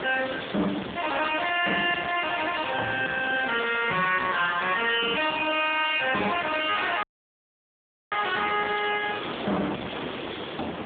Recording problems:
phone line; 170 Hz to 3.6 kHz, AMR-NB
distorted audio; soft clipping, signal-to-distortion ratio 5 dB
hiss; SNR 15 dB
wind on the microphone; below 1.5 kHz, SNR 11 dB
audio cutting out; at 7 s for 1 s

